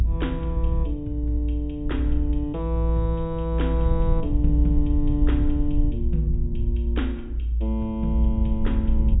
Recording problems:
low-pass filter; nothing above 4 kHz
rumble; below 60 Hz, strongest tone 58 Hz, SNR -3 dB

